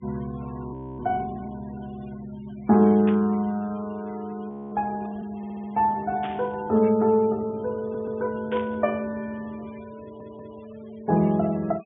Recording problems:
low-pass filter; nothing above 3.5 kHz
denoising artefacts; signal-to-artefact ratio 25 dB
audio freezing; at 0.5 s and at 4.5 s
static burst; at 3 s, at 6 s and at 8.5 s; peak -9 dB vs average level
audio stuttering; at 5.5 s, at 8 s and at 10 s

